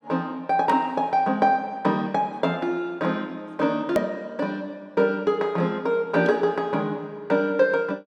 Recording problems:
click at an edit; at 4 s

